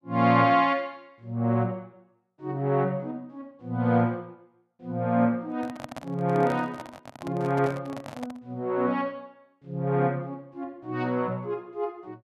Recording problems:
handling noise; from 5.5 to 8.5 s; peak -6 dB vs average level

